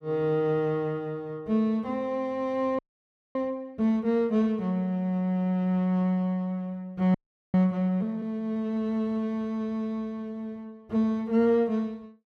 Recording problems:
frozen audio; at 3 s for 0.5 s and at 7 s

